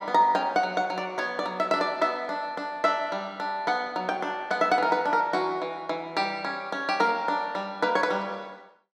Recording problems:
none

